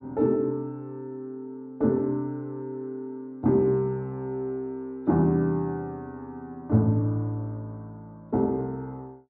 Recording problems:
none

